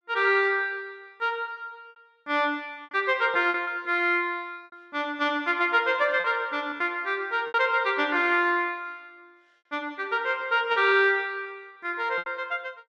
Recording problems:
lost packets; 5% of the sound replaced, filled with repeated pitch periods

